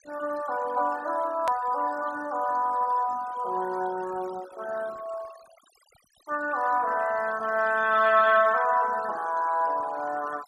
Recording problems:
denoising artefacts; signal-to-artefact ratio 20 dB
hard cut with a click; at 1.5 s

